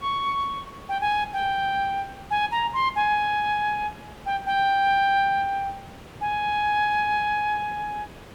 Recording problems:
background hiss; slope -6 dB per octave, SNR 19 dB

